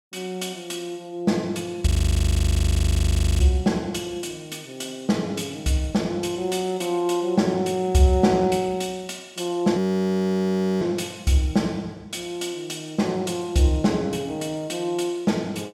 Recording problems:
frozen audio; at 2 s for 1.5 s and at 10 s for 1 s

